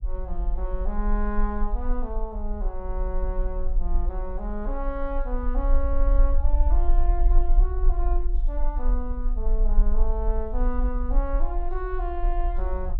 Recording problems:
low-frequency rumble; below 42 Hz, strongest tone 24 Hz, SNR -6 dB

